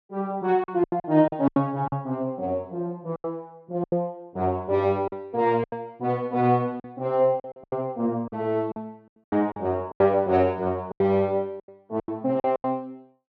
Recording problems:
packet loss; 12% of the sound replaced, filled with silence

